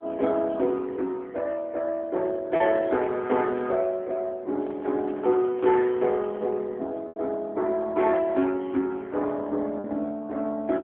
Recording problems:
phone line; 220 Hz to 3.4 kHz, AMR-NB
packet loss; 1.5% of the sound replaced, filled with repeated pitch periods
microphone handling noise; from 4.5 to 6.5 s; peak -13 dB vs average level

